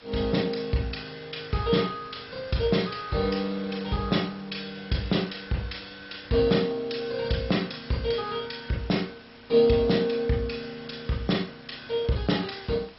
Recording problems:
lossy compression; MP2, log-spectral distance 8 dB, nothing above 5.5 kHz
background hiss; slope -2 dB per octave, SNR 22 dB

